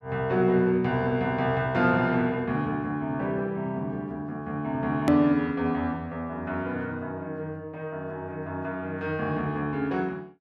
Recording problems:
hard cut with a click; at 5 s

